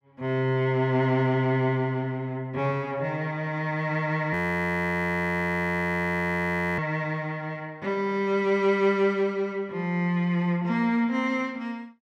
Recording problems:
frozen audio; at 4.5 s for 2.5 s

